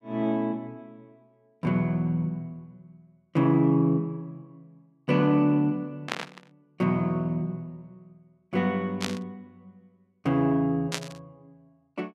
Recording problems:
burst of static; at 6 s, at 9 s and at 11 s; peak +1 dB vs average level

